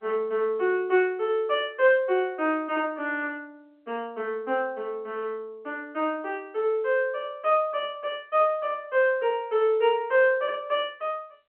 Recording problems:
telephone audio; 240 Hz to 3.1 kHz, G.711

